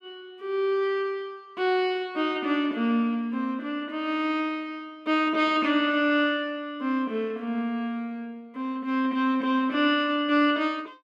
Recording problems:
none

